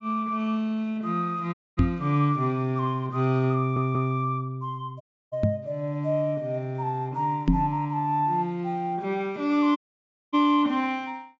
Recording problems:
treble missing; nothing above 8 kHz
audio cutting out; at 1.5 s, at 5 s and at 10 s for 0.5 s
microphone bump; at 2 s, at 5.5 s and at 7.5 s; peak +9 dB vs average level
audio stuttering; at 3.5 s

